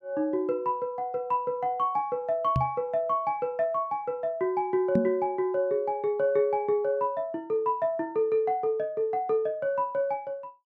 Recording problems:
microphone thump; at 2.5 s and at 5 s; peak +5 dB vs average level

